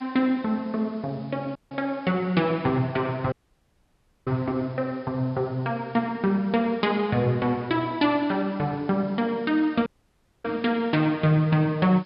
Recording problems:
treble cut off; nothing above 5.5 kHz
background hiss; SNR 30 dB
audio cutting out; at 1.5 s, at 3.5 s for 1 s and at 10 s for 0.5 s

